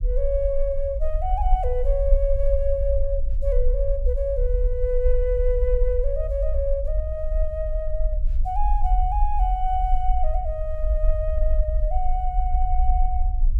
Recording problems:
low-frequency rumble; below 48 Hz, SNR -2 dB

